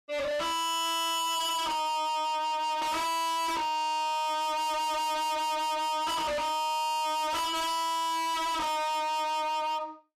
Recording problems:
distortion; hard clipping, signal-to-distortion ratio 6 dB

